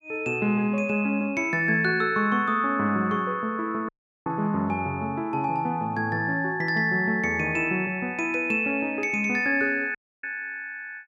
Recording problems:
audio cutting out; at 4 s and at 10 s

